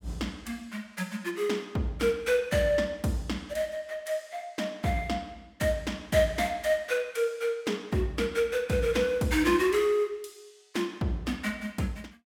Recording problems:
none

